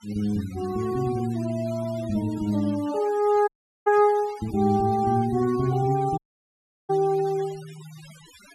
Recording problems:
noise reduction artefacts; signal-to-artefact ratio 21 dB
dropout; at 3.5 s and at 6 s for 0.5 s

